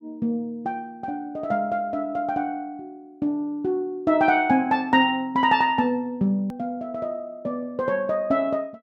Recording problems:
click at an edit; at 6.5 s

